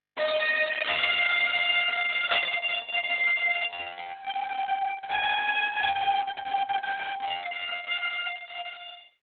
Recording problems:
lossy compression; AAC, then Opus, log-spectral distance 7 dB, nothing above 3.7 kHz
distortion; hard clipping, uneven, signal-to-distortion ratio 9 dB

